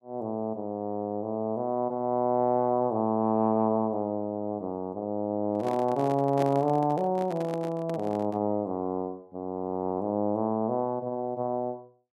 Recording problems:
handling noise; from 5.5 to 8.5 s; peak -2 dB vs average level

